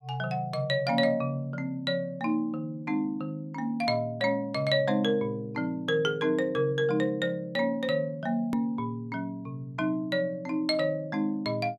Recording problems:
hard cut with a click; at 8.5 s

